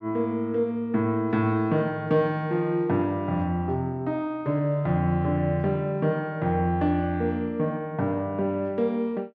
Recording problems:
none

